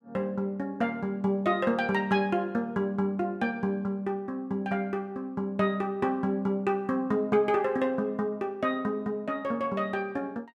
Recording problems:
none

